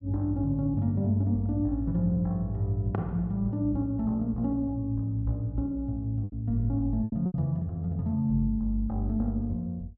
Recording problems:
lost packets; 3% of the sound replaced, filled with repeated pitch periods

